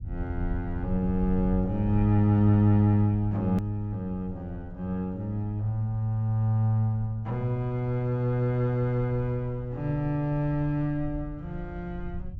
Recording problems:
treble missing; nothing above 7.6 kHz
rumble; below 86 Hz, SNR 13 dB
edit click; at 3.5 s

